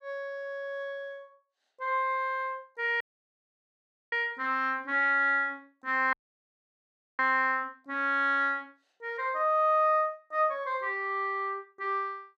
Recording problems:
audio cutting out; at 3 s for 1 s and at 6 s for 1 s

